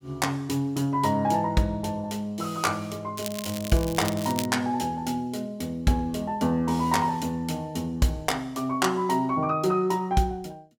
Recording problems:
crackle; from 3 to 4.5 s; loose cable, SNR 10 dB

